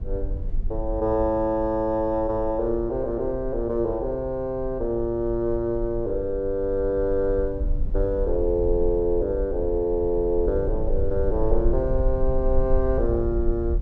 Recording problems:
low-frequency rumble; below 52 Hz, strongest tone 20 Hz, SNR 7 dB

